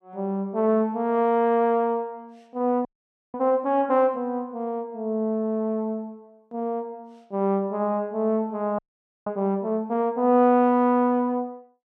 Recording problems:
frozen audio; at 3 s and at 9 s

